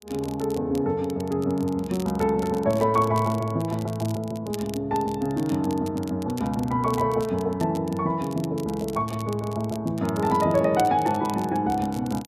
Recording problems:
crackle; vinyl, SNR 20 dB

